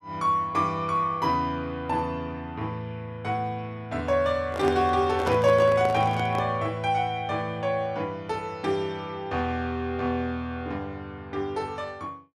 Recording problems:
microphone handling noise; from 4.5 to 6.5 s; peak 0 dB vs average level

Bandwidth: 13 kHz